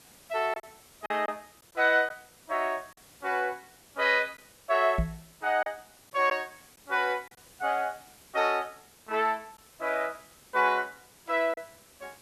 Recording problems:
background hiss; slope -2 dB per octave, SNR 25 dB
lost packets; 3% of the sound replaced, filled with silence
microphone thump; at 5 s; peak +4 dB vs average level

